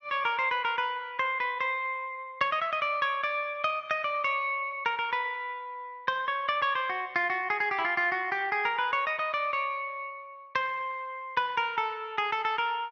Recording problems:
none

